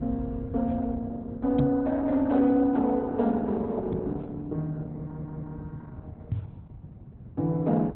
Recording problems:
lossy codec; Opus, log-spectral distance 2 dB, nothing above 4 kHz
rumble; below 140 Hz, SNR 13 dB
microphone thump; at 1.5 s, at 4 s and at 6.5 s; peak +4 dB vs average level
audio stuttering; at 5 s

